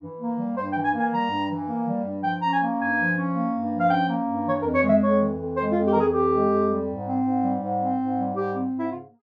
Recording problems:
none

